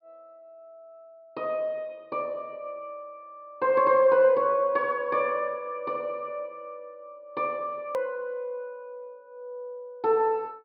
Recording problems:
low-pass filter; nothing above 5.5 kHz
hard cut with a click; at 8 s

